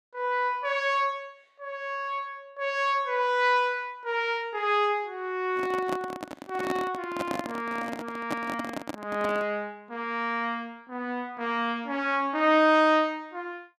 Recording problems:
handling noise; from 5.5 to 9.5 s; peak 0 dB vs average level

